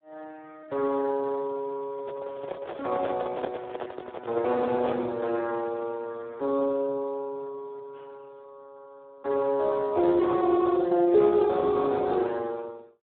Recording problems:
phone line; 300 Hz to 2.3 kHz, Speex
microphone handling noise; from 2 to 5 s; peak 0 dB vs average level

